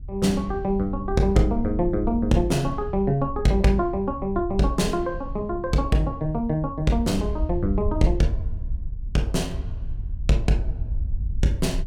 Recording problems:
wind on the microphone; below 72 Hz, SNR 8 dB

